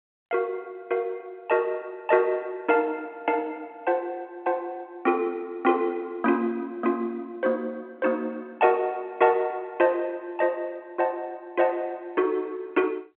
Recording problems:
phone line; 240 Hz to 3.5 kHz, G.711

